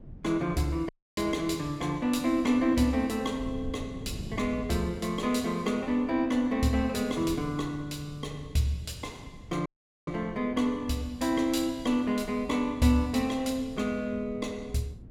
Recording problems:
wind on the microphone; below 200 Hz, SNR 16 dB
audio cutting out; at 1 s and at 9.5 s

